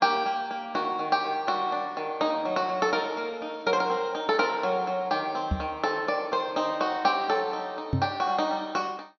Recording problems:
low-pass filter; nothing above 6.5 kHz
microphone thump; at 5.5 s and at 8 s; peak +4 dB vs average level

